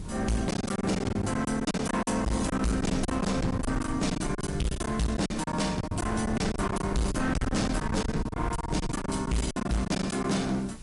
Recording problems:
codec artefacts; MP3, log-spectral distance 4 dB, nothing above 11 kHz
distortion; hard clipping, uneven, signal-to-distortion ratio 6 dB
hiss; slope +1 dB per octave, SNR 25 dB
wind on the microphone; below 200 Hz, SNR 8 dB
lost packets; 15% of the sound replaced, filled with silence

